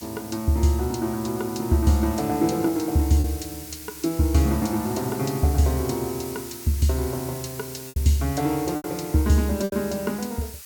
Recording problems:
hiss; SNR 13 dB
lost packets; 3% of the sound replaced, filled with repeated pitch periods

